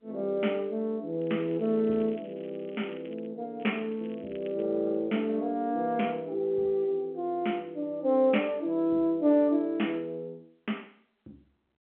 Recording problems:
phone line; 240 Hz to 3.2 kHz, G.711
crackle; from 1 to 3.5 s and from 3.5 to 4.5 s; loose cable, SNR 27 dB

